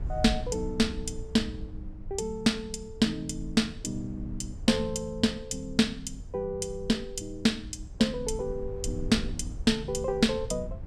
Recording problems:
low-frequency rumble; below 80 Hz, SNR 12 dB

